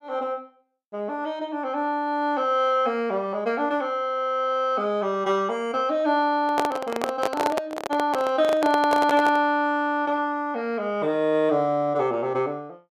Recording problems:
microphone handling noise; from 6.5 to 9.5 s; peak +3 dB vs average level

